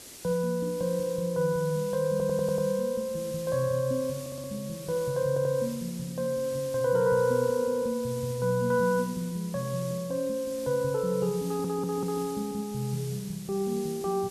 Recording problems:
hiss; SNR 15 dB
stutter; 4 times, first at 2 s

